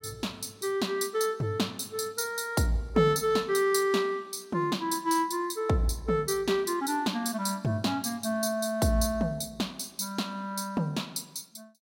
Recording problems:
none

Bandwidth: 16.5 kHz